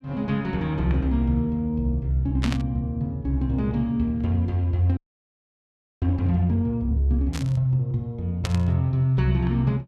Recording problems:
static burst; at 2.5 s, at 7.5 s and at 8.5 s; peak -3 dB vs average level
audio freezing; at 5 s for 1 s

